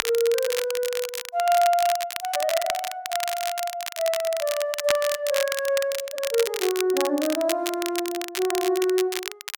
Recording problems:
crackle; vinyl, SNR 6 dB

